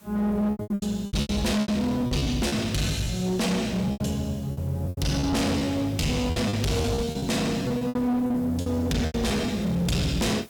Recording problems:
distortion; hard clipping, signal-to-distortion ratio 8 dB
hiss; slope -2 dB per octave, SNR 25 dB
lost packets; 15% of the sound replaced, filled with repeated pitch periods

